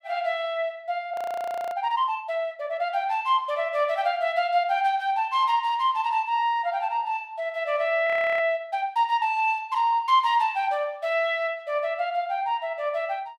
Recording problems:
frozen audio; at 1 s for 0.5 s and at 8 s

